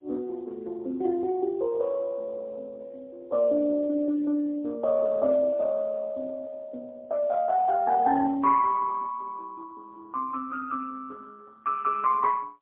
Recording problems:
phone line; 240 Hz to 2.2 kHz, AMR-NB, then MP3

